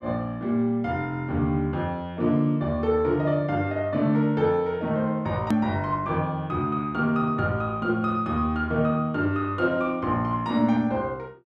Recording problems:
hard cut with a click; at 5.5 s

